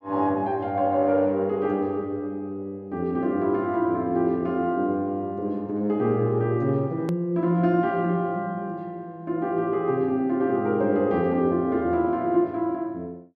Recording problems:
click at an edit; at 7 s

